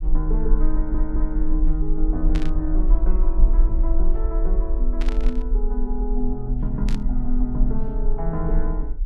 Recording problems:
low-frequency rumble; below 38 Hz, strongest tone 18 Hz, SNR -4 dB
audio stuttering; at 0.5 s
static burst; at 2.5 s, at 5 s and at 7 s; peak -2 dB vs average level

